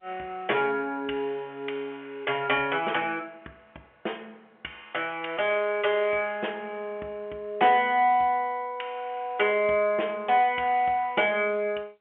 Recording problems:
telephone audio; 280 Hz to 3.2 kHz, G.711

